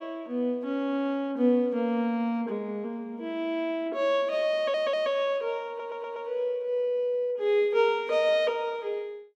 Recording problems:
stutter; at 4.5 s and at 5.5 s

